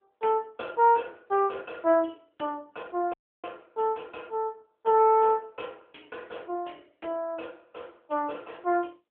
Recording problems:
phone line; 260 Hz to 3.6 kHz, AMR-NB
audio cutting out; at 3 s

